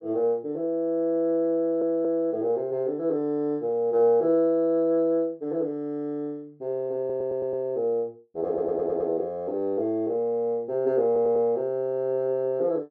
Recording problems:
audio stuttering; 4 times, first at 1.5 s

